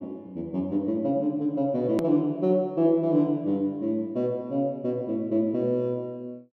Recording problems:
hard cut with a click; at 2 s

